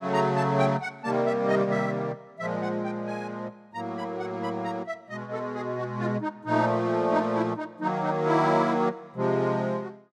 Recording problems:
none

